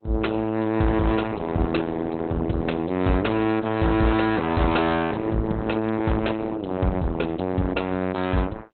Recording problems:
lossy codec; Opus, log-spectral distance 4 dB, nothing above 4 kHz
distorted audio; hard clipping, signal-to-distortion ratio 7 dB

